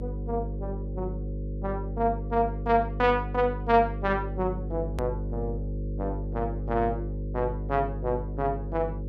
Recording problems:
hum; 50 Hz, harmonics up to 550 Hz, SNR 5 dB
click at an edit; at 5 s

